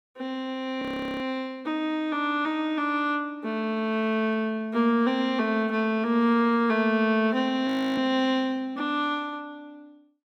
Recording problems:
frozen audio; at 1 s and at 7.5 s

